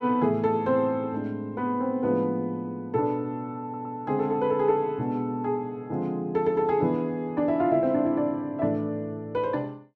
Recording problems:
stutter; at 3.5 s

